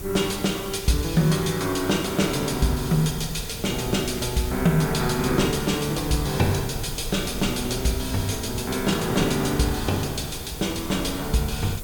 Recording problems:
hiss; SNR 13 dB
wind noise; below 110 Hz, SNR 14 dB

